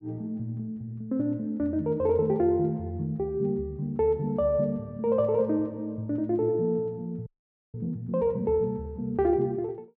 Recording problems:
frozen audio; at 7.5 s

